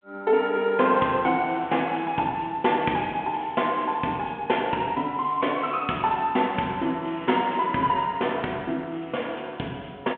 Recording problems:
telephone audio; 220 Hz to 3.3 kHz, G.726

